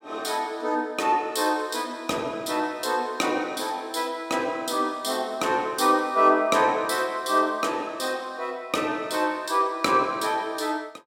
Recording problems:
none

